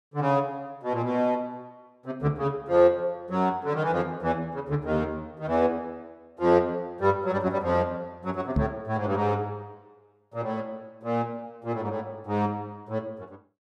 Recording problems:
microphone bump; at 8.5 s; peak +6 dB vs average level

